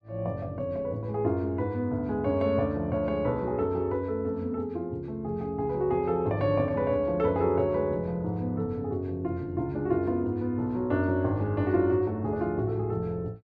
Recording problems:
none

